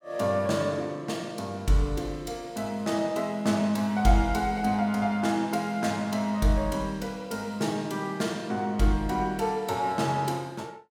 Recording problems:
none

